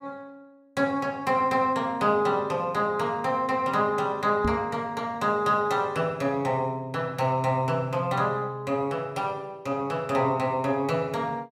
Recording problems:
microphone bump; at 4.5 s; peak +2 dB vs average level

